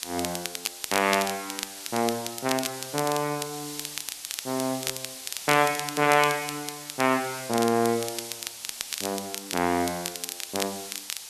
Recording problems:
hiss; slope +3 dB per octave, SNR 10 dB
crackle; vinyl, SNR 8 dB

